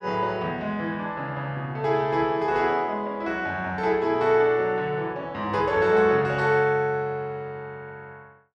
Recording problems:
none

